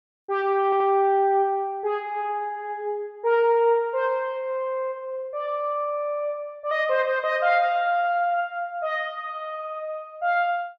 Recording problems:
audio stuttering; at 0.5 s

